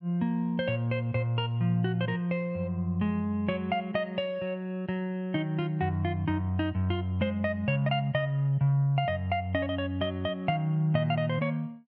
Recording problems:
none

